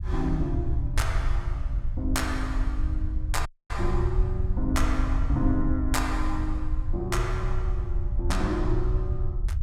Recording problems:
low-frequency rumble; below 70 Hz, SNR -1 dB
audio cutting out; at 3.5 s

